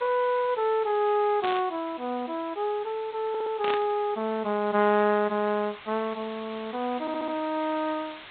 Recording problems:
low-pass filter; nothing above 4 kHz
lossy compression; MP3, then Vorbis, log-spectral distance 10 dB
hiss; SNR 18 dB
burst of static; at 1.5 s and at 3.5 s; peak -1 dB vs average level
audio stuttering; at 3.5 s and at 7 s

